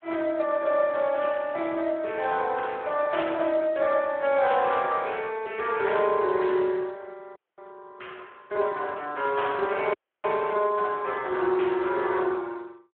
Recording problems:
phone line; 300 Hz to 3.4 kHz, Speex
dropout; at 7.5 s and at 10 s

